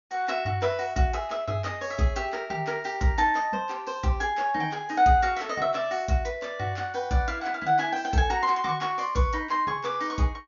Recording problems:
treble missing; nothing above 6.9 kHz

